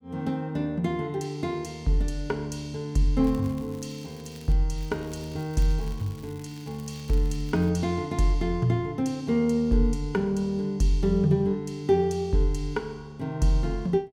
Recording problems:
crackle; from 3 to 4.5 s and from 5 to 7.5 s; loose cable, SNR 25 dB

